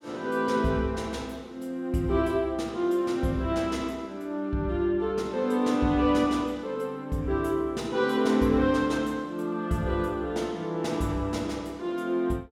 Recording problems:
none

